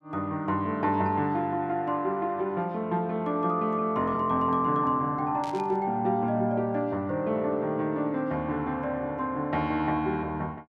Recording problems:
static burst; at 5.5 s; peak -12 dB vs average level

